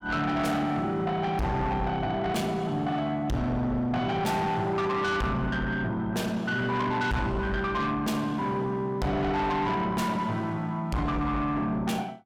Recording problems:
distortion; soft clipping, signal-to-distortion ratio 7 dB

